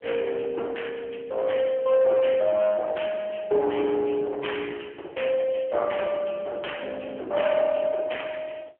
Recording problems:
telephone audio; 300 Hz to 3.2 kHz, AMR-NB
distorted audio; hard clipping, uneven, signal-to-distortion ratio 12 dB

